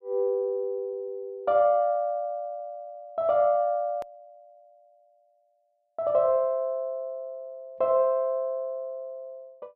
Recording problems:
edit click; at 4 s

